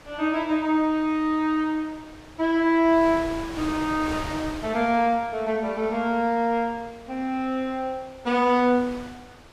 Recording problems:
wind on the microphone; below 2 kHz, SNR 17 dB

